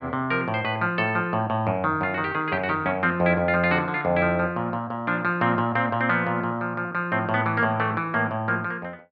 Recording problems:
none

